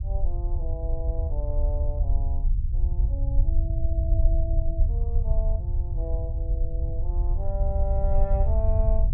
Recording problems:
low-frequency rumble; below 68 Hz, SNR -11 dB

